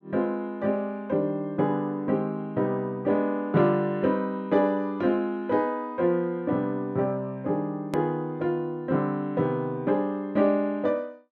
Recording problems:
hard cut with a click; at 8 s

